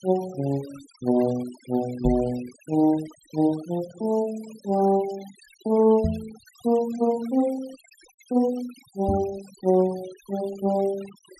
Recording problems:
noise reduction artefacts; signal-to-artefact ratio 22 dB
knock on the microphone; at 2 s, at 6 s and at 9 s; peak +2 dB vs average level

